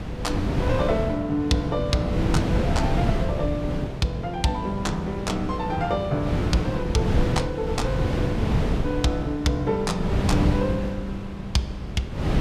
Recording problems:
wind on the microphone; below 270 Hz, SNR 1 dB

